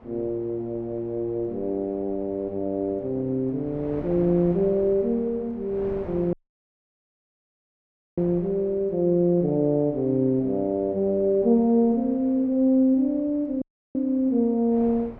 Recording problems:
wind noise; below 640 Hz, SNR 21 dB
dropout; at 6.5 s for 2 s and at 14 s

